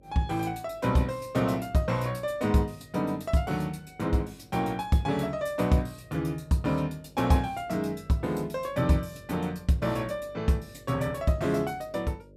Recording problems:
electrical hum; 50 Hz, harmonics up to 600 Hz, SNR 27 dB

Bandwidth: 15.5 kHz